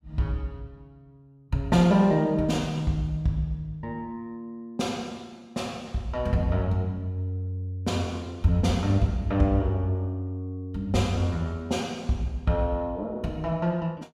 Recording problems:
none

